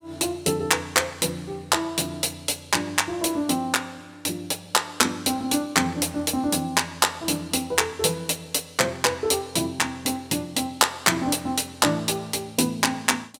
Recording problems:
none

